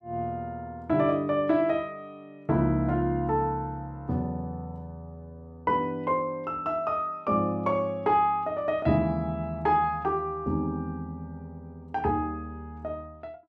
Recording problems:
none

